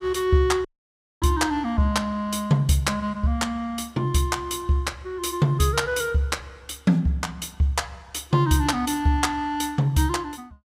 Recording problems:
audio cutting out; at 0.5 s for 0.5 s

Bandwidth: 15.5 kHz